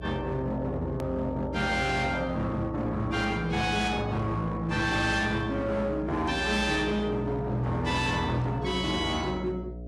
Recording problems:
codec artefacts; AAC, log-spectral distance 3 dB
distortion; hard clipping, signal-to-distortion ratio 11 dB
mains hum; 60 Hz, harmonics up to 720 Hz, SNR 12 dB
click at an edit; at 1 s

